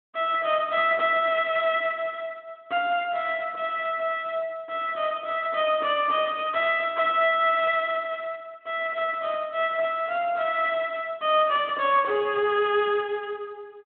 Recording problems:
telephone audio; 280 Hz to 3.3 kHz, Speex

